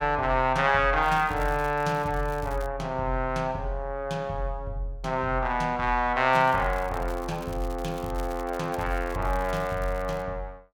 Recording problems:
crackle; from 1 to 2.5 s and from 6.5 to 10 s; loose cable, SNR 22 dB

